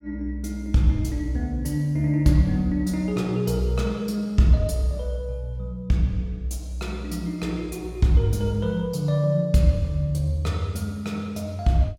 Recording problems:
none

